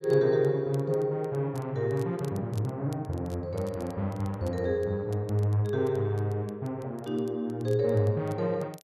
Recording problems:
crackle; vinyl, SNR 27 dB

